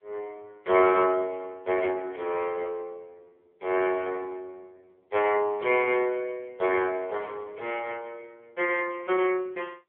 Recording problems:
telephone audio; 320 Hz to 2.8 kHz, AMR-NB

